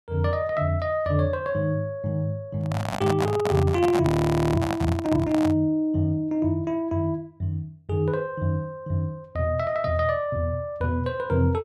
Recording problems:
handling noise; from 2.5 to 5.5 s; peak +2 dB vs average level
audio freezing; at 4 s

